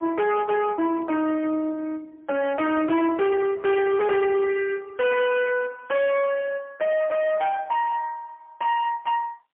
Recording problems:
telephone audio; 110 Hz to 3.4 kHz, AMR-NB, then MP3
distortion; hard clipping, uneven, signal-to-distortion ratio 7 dB

